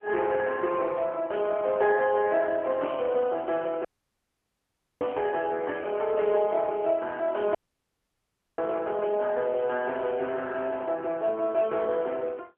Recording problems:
phone line; 320 Hz to 3.4 kHz, AMR-NB
audio cutting out; at 4 s for 1 s and at 7.5 s for 1 s

